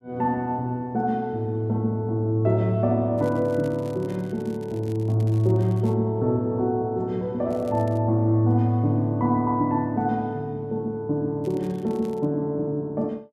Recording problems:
crackling; from 3 to 6 s, at 7.5 s and at 11 s; loose cable, SNR 29 dB

